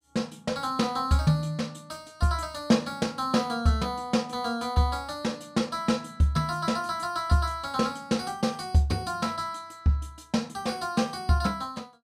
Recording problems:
none

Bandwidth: 15.5 kHz